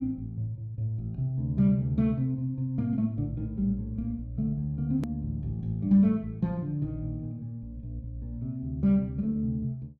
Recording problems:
edit click; at 5 s

